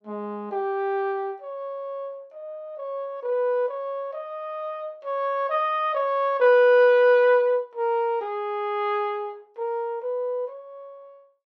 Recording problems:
none

